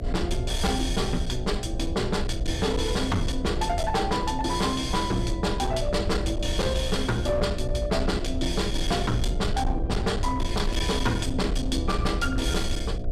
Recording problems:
distorted audio; hard clipping, uneven, signal-to-distortion ratio 11 dB
hum; 60 Hz, harmonics up to 720 Hz, SNR 11 dB
low-frequency rumble; below 74 Hz, SNR 5 dB

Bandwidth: 14 kHz